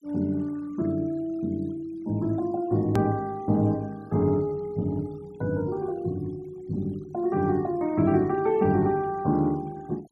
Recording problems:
noise reduction artefacts; signal-to-artefact ratio 27 dB
click at an edit; at 3 s

